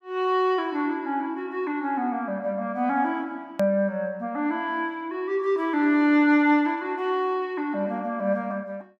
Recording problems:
edit click; at 3.5 s

